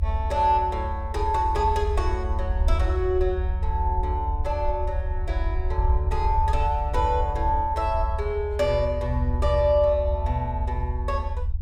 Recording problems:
rumble; below 76 Hz, SNR 2 dB

